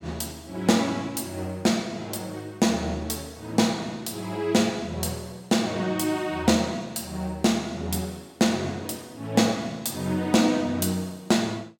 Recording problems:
none

